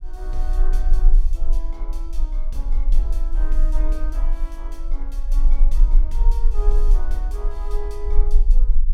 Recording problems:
rumble; below 34 Hz, strongest tone 18 Hz, SNR -14 dB

